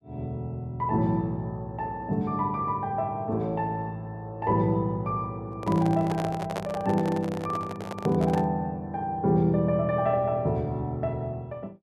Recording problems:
microphone handling noise; from 5.5 to 8.5 s; peak -1 dB vs average level

